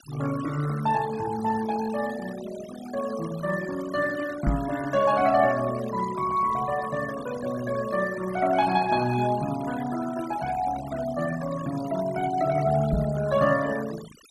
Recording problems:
noise reduction artefacts; signal-to-artefact ratio 15 dB
knock on the microphone; at 4.5 s and at 13 s; peak +5 dB vs average level

